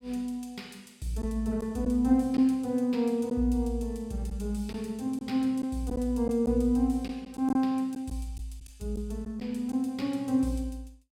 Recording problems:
lost packets; 3% of the sound replaced, filled with silence

